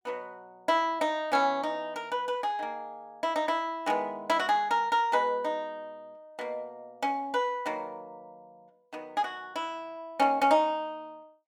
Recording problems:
none

